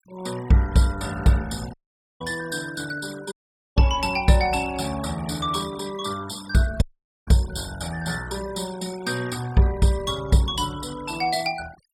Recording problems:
noise reduction artefacts; signal-to-artefact ratio 17 dB
audio cutting out; at 1.5 s, at 3.5 s and at 7 s

